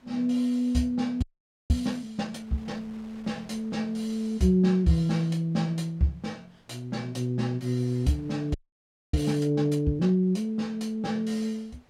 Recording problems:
wind on the microphone; below 1.9 kHz, SNR 30 dB
audio freezing; at 1 s and at 8.5 s for 0.5 s

